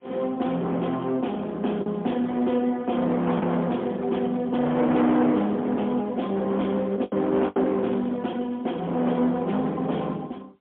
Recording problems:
phone line; 190 Hz to 3.4 kHz, AMR-NB, then MP3
distorted audio; hard clipping, uneven, signal-to-distortion ratio 9 dB
lost packets; 2% of the sound replaced, filled with the last packet

